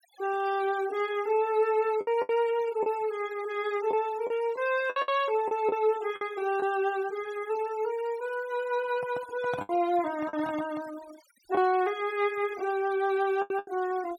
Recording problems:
noise reduction artefacts; signal-to-artefact ratio 19 dB
lost packets; 6% of the sound replaced, filled with the last packet
handling noise; from 9 to 11 s; peak -5 dB vs average level

